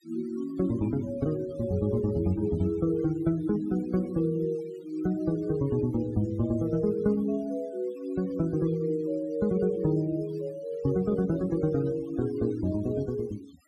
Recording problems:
denoising artefacts; signal-to-artefact ratio 23 dB

